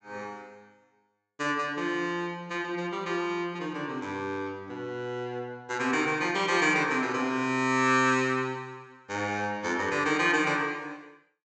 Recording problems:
low-pass filter; nothing above 8 kHz

